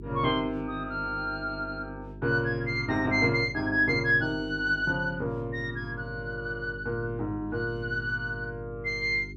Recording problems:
electrical hum; 50 Hz, harmonics up to 400 Hz, SNR 14 dB

